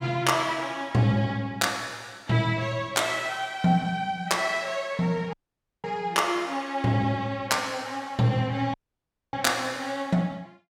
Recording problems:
audio cutting out; at 5.5 s for 0.5 s and at 8.5 s for 0.5 s

